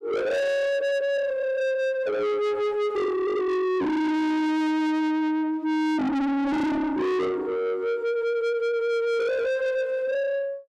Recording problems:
distorted audio; soft clipping, signal-to-distortion ratio 6 dB

